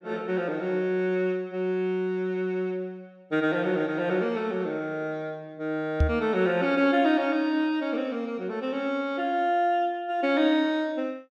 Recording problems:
knock on the microphone; at 6 s; peak +7 dB vs average level

